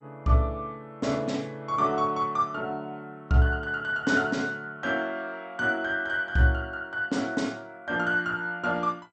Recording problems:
codec artefacts; MP2, log-spectral distance 2 dB, nothing above 7.8 kHz

